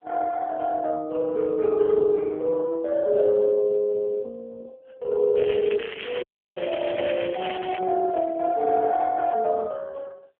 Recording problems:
phone line; 320 Hz to 2.8 kHz, AMR-NB
crackle; from 5.5 to 8 s; loose cable, SNR 13 dB
audio cutting out; at 6 s
microphone handling noise; from 7.5 to 9.5 s; peak -15 dB vs average level

